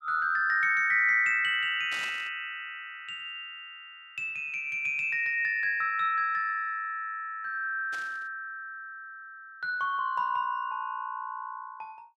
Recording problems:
static burst; at 2 s and at 8 s; peak -10 dB vs average level

